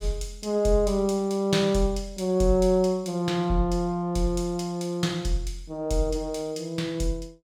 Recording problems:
none

